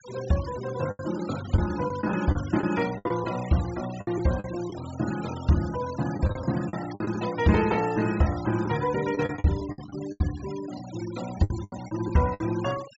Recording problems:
treble missing; nothing above 8 kHz
denoising artefacts; signal-to-artefact ratio 15 dB
lost packets; 10% of the sound replaced, filled with the last packet

